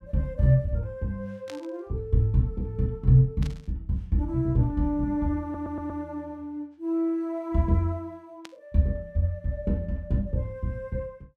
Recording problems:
burst of static; at 1.5 s, at 3.5 s and at 8.5 s; peak -10 dB vs average level
audio stuttering; at 5.5 s

